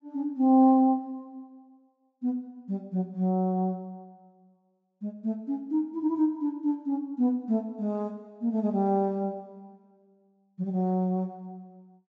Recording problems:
treble missing; nothing above 8 kHz

